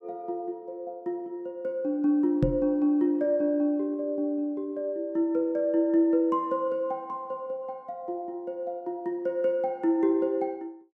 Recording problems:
microphone bump; at 2.5 s; peak +6 dB vs average level

